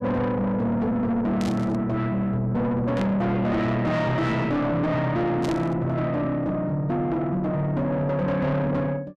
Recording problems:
distortion; soft clipping, signal-to-distortion ratio 6 dB
burst of static; at 1.5 s, at 3 s and at 5.5 s; peak -8 dB vs average level

